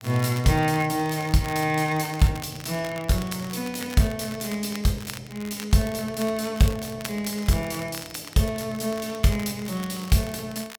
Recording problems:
crackle; vinyl, SNR 16 dB

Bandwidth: 17.5 kHz